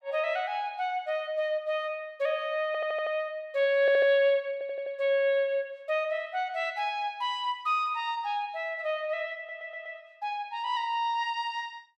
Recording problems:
stutter; 4 times, first at 2.5 s

